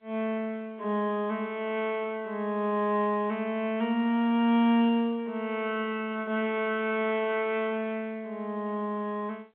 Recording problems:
phone line; 280 Hz to 3.7 kHz, G.711

